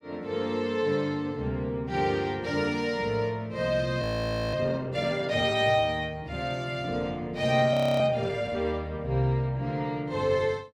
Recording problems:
frozen audio; at 4 s for 0.5 s and at 7.5 s

